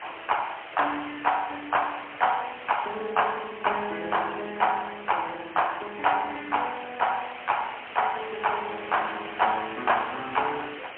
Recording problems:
phone line; 260 Hz to 3.1 kHz, AMR-NB, then MP3
background hiss; SNR 12 dB

